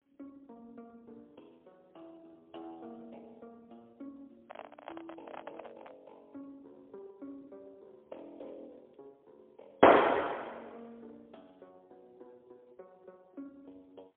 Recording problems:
telephone audio; 260 Hz to 3.4 kHz, AMR-NB, then MP3
distortion; hard clipping, signal-to-distortion ratio 14 dB
microphone handling noise; from 4.5 to 6 s; peak -14 dB vs average level

